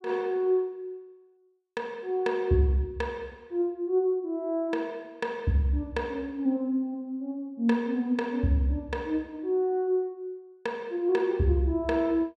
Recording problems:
none

